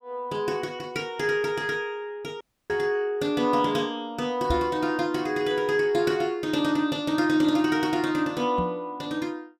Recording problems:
dropout; at 2.5 s
microphone bump; at 2.5 s, at 4.5 s and at 8.5 s; peak +1 dB vs average level

